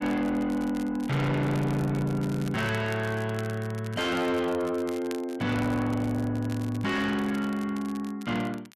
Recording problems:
distortion; soft clipping, signal-to-distortion ratio 7 dB
crackling; vinyl, SNR 20 dB

